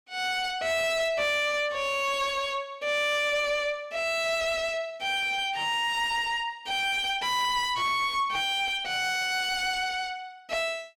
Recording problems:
distortion; soft clipping, signal-to-distortion ratio 5 dB

